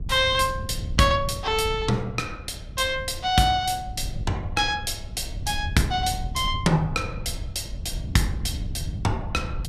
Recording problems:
wind noise; below 110 Hz, SNR 9 dB

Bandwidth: 15 kHz